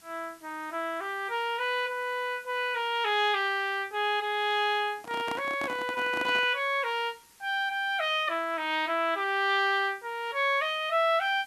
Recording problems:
hiss; SNR 27 dB
microphone handling noise; from 5 to 6.5 s; peak -5 dB vs average level

